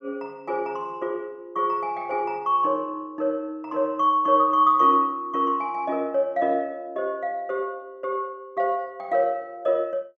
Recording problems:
none

